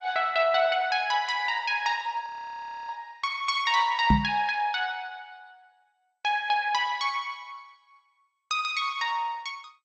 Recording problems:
codec artefacts; MP2, log-spectral distance 3 dB, nothing above 7.8 kHz
frozen audio; at 2.5 s for 0.5 s
microphone bump; at 4 s; peak +7 dB vs average level

